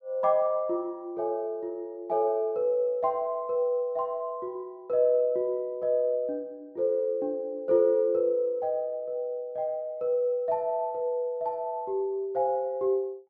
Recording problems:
none

